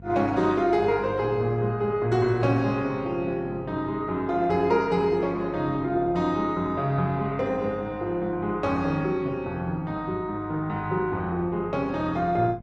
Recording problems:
lossy compression; Opus, log-spectral distance 2 dB
hum; 50 Hz, harmonics up to 550 Hz, SNR 19 dB

